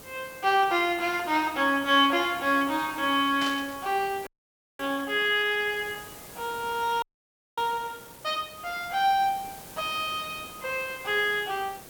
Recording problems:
hiss; slope -4 dB per octave, SNR 17 dB
burst of static; at 3.5 s; peak -5 dB vs average level
audio freezing; at 4.5 s for 0.5 s and at 7 s for 0.5 s

